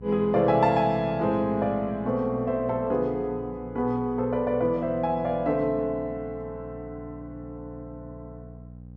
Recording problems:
electrical hum; 60 Hz, harmonics up to 540 Hz, SNR 18 dB

